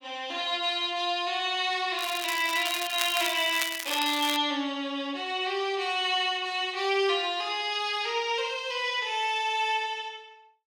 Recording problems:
crackle; from 2 to 4.5 s; loose cable, SNR 6 dB

